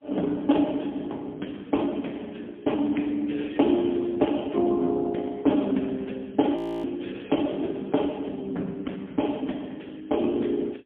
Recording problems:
phone line; 190 Hz to 3.3 kHz, AMR-NB, then MP3
frozen audio; at 6.5 s

